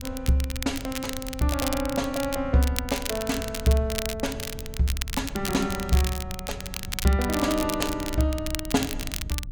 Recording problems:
wind noise; below 98 Hz, SNR 12 dB
crackle; vinyl, SNR 7 dB

